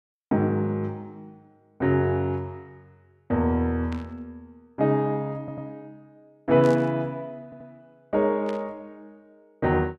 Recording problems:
static burst; at 4 s, at 6.5 s and at 8.5 s; peak -12 dB vs average level
audio stuttering; at 5.5 s and at 7.5 s

